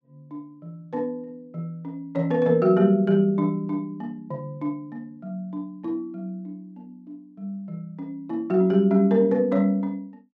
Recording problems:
none

